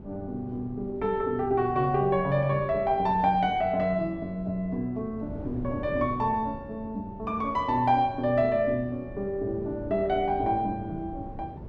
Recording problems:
wind noise; below 290 Hz, SNR 15 dB

